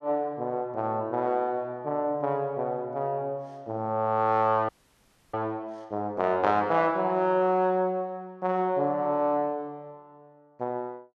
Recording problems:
frozen audio; at 4.5 s for 0.5 s

